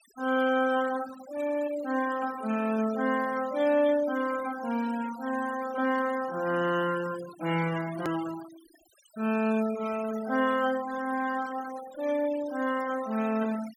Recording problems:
denoising artefacts; signal-to-artefact ratio 16 dB
edit click; at 8 s

